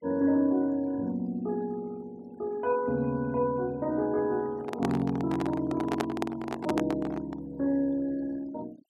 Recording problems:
noise reduction artefacts; signal-to-artefact ratio 24 dB
handling noise; from 4.5 to 7.5 s; peak +4 dB vs average level

